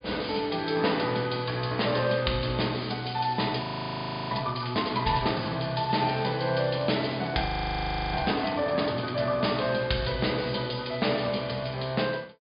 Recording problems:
low-pass filter; nothing above 5 kHz
crackle; from 3 to 5 s, from 6 to 8.5 s and at 10 s; loose cable, SNR 22 dB
audio freezing; at 3.5 s for 0.5 s and at 7.5 s for 0.5 s

